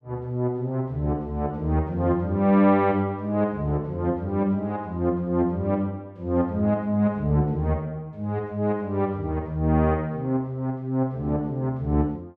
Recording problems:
none

